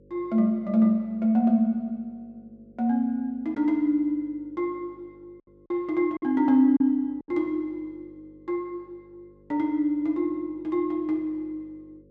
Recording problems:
hum; 50 Hz, harmonics up to 550 Hz, SNR 30 dB
lost packets; 1.7% of the sound replaced, filled with silence

